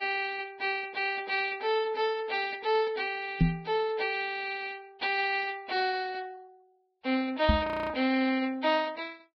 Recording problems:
lossy codec; Vorbis, log-spectral distance 3 dB
knock on the microphone; at 3.5 s and at 7.5 s; peak +9 dB vs average level
audio freezing; at 7.5 s

